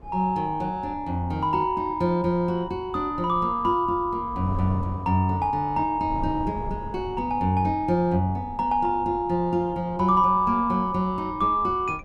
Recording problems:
wind noise; below 210 Hz, SNR 17 dB

